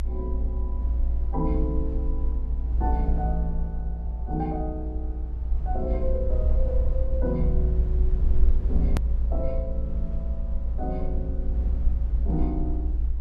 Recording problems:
rumble; below 60 Hz, SNR -6 dB
click at an edit; at 9 s

